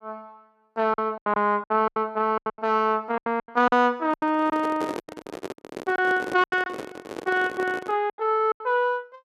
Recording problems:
lost packets; 14% of the sound replaced, filled with silence
handling noise; from 4 to 8 s; peak -4 dB vs average level

